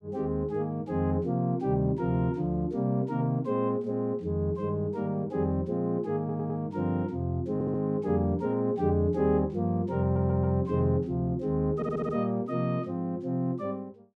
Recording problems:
stutter; 4 times, first at 6 s

